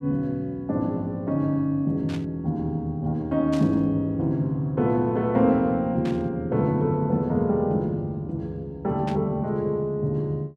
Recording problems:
static burst; 4 times, first at 2 s; peak -10 dB vs average level

